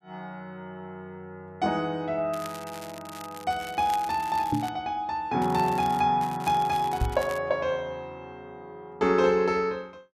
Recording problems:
crackle; from 2.5 to 4.5 s, at 5.5 s and from 6 to 7.5 s; loose cable, SNR 18 dB
knock on the microphone; at 4.5 s and at 7 s; peak +3 dB vs average level

